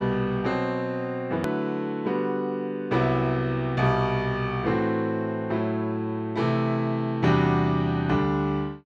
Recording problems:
click at an edit; at 1.5 s

